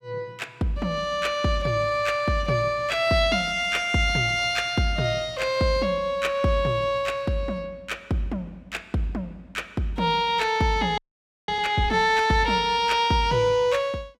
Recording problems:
frozen audio; at 11 s for 0.5 s

